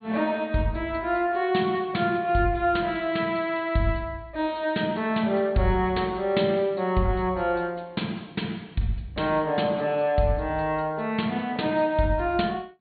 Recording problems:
treble missing; nothing above 4.5 kHz

